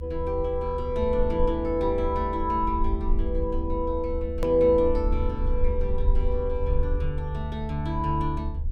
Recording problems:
rumble; below 72 Hz, SNR 4 dB
click at an edit; at 4.5 s

